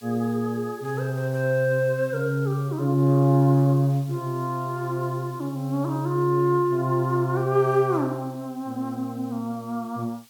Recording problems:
hiss; slope +2 dB per octave, SNR 26 dB

